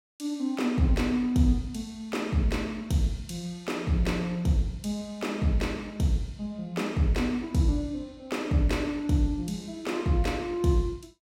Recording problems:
none

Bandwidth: 16 kHz